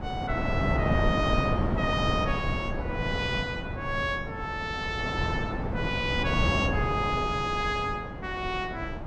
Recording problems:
wind noise; below 470 Hz, SNR 1 dB

